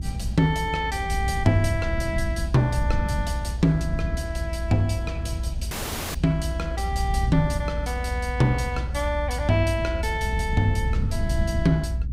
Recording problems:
low-frequency rumble; below 90 Hz, strongest tone 58 Hz, SNR 3 dB
dropout; at 5.5 s

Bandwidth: 15.5 kHz